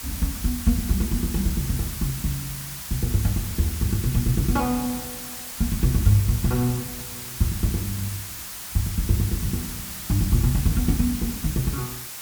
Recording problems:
hiss; slope +1 dB per octave, SNR 7 dB

